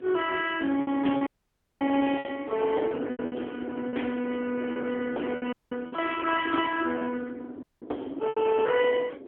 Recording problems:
telephone audio; 260 Hz to 3.3 kHz, AMR-NB
distortion; soft clipping, signal-to-distortion ratio 15 dB
wind on the microphone; below 600 Hz, SNR 11 dB
lost packets; 9% of the sound replaced, filled with repeated pitch periods
dropout; at 1.5 s for 0.5 s, at 5.5 s and at 7.5 s

